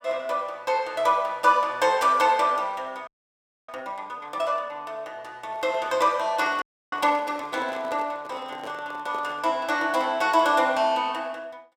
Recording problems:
audio freezing; at 3 s for 0.5 s and at 6.5 s
microphone handling noise; from 5.5 to 9.5 s; peak -10 dB vs average level

